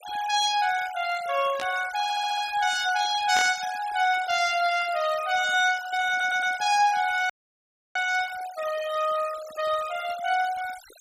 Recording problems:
noise reduction artefacts; signal-to-artefact ratio 16 dB
static burst; at 1.5 s and at 3.5 s; peak -4 dB vs average level
audio stuttering; at 2 s and at 6 s
dropout; at 7.5 s for 0.5 s

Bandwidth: 15 kHz